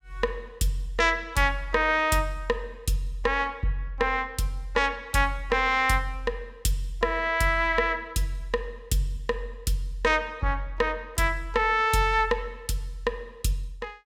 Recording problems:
none

